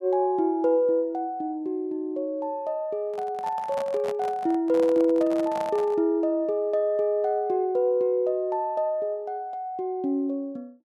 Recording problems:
handling noise; from 3 to 6 s; peak -7 dB vs average level

